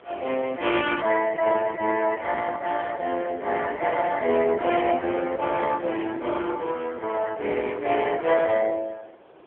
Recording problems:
telephone audio; 300 Hz to 3.3 kHz, AMR-NB
background hiss; SNR 24 dB

